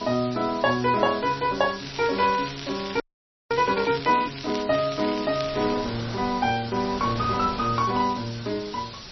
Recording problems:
lossy compression; MP3, log-spectral distance 15 dB, nothing above 5.7 kHz
hiss; slope +3 dB per octave, SNR 15 dB
wind noise; below 2 kHz, SNR 16 dB
crackling; from 2 to 4.5 s and from 4.5 to 5.5 s; loose cable, SNR 13 dB
audio freezing; at 3 s for 0.5 s

